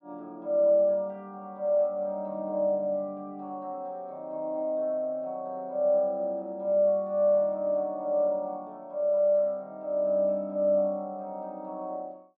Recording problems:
none

